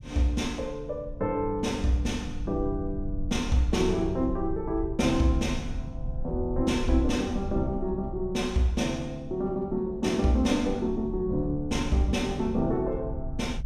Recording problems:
low-frequency rumble; below 80 Hz, SNR 10 dB

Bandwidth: 15 kHz